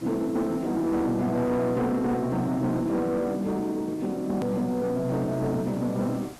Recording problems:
distortion; soft clipping, signal-to-distortion ratio 11 dB
background hiss; slope -4 dB per octave, SNR 22 dB
click at an edit; at 4.5 s

